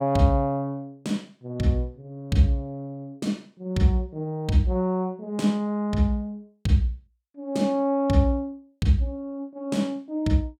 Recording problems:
none

